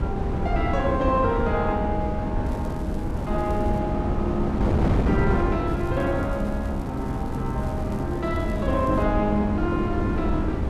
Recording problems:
wind noise; below 290 Hz, SNR 0 dB
crackling; from 2.5 to 4 s and from 5.5 to 9 s; loose cable, SNR 26 dB

